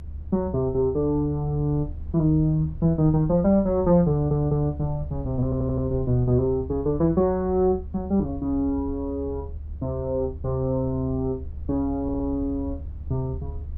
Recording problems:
rumble; below 76 Hz, strongest tone 74 Hz, SNR 12 dB
stutter; at 4 s, at 5.5 s and at 12 s

